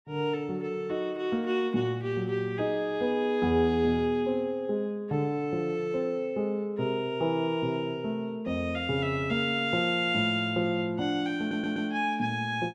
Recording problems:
stutter; at 11 s

